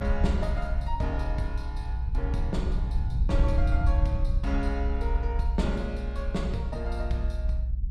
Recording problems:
low-frequency rumble; below 64 Hz, SNR -4 dB

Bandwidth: 15 kHz